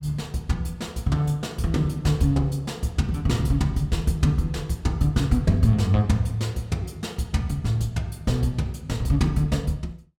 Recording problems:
none

